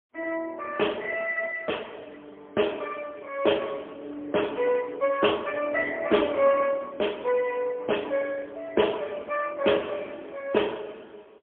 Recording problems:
telephone audio; 240 Hz to 3.3 kHz, AMR-NB, then MP3

